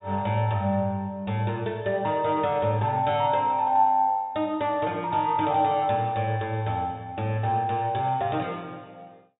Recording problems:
treble cut off; nothing above 4 kHz

